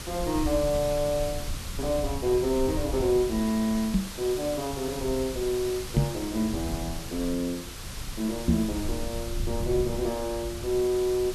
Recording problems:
hiss; slope -1 dB per octave, SNR 10 dB
low-frequency rumble; below 96 Hz, SNR 10 dB
microphone thump; at 4 s, at 6 s and at 8.5 s; peak +9 dB vs average level

